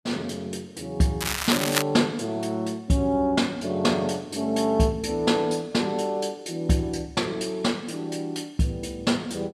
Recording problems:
crackle; at 1 s; loose cable, SNR 2 dB

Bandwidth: 14.5 kHz